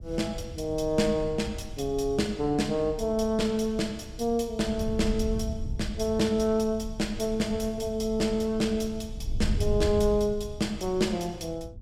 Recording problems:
wind noise; below 94 Hz, SNR 10 dB

